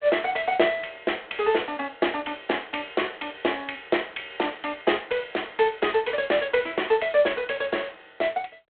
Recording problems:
phone line; 300 Hz to 3.5 kHz, G.726

